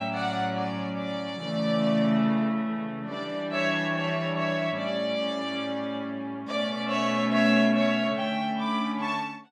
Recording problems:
none

